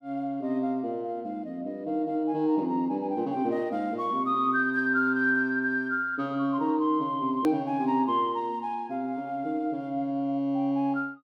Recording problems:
click at an edit; at 7.5 s

